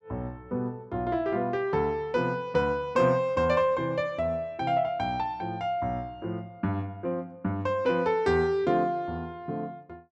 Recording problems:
none

